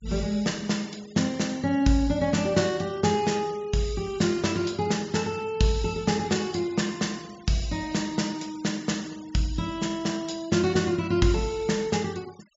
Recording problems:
treble cut off; nothing above 7.3 kHz
denoising artefacts; signal-to-artefact ratio 22 dB

